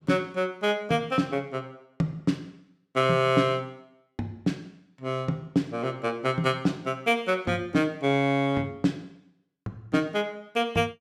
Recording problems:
none

